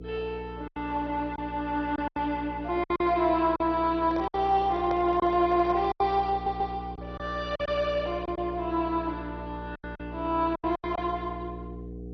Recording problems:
codec artefacts; MP2, log-spectral distance 3 dB, nothing above 4.9 kHz
hum; 60 Hz, harmonics up to 480 Hz, SNR 13 dB
packet loss; 8% of the sound replaced, filled with silence
microphone handling noise; from 4 to 6 s; peak -6 dB vs average level
audio stuttering; at 6.5 s

